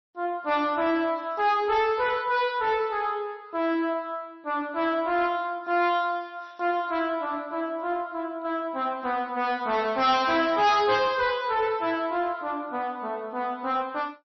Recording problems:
codec artefacts; MP3, log-spectral distance 2 dB, nothing above 5.5 kHz
distortion; soft clipping, signal-to-distortion ratio 10 dB

